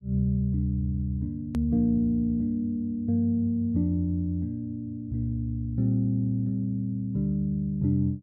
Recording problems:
edit click; at 1.5 s

